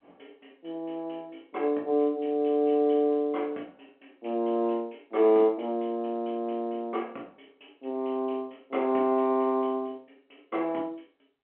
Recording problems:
telephone audio; 240 Hz to 3.3 kHz, G.711

